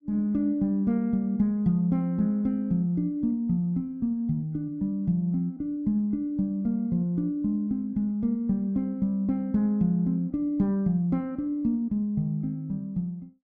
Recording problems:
none

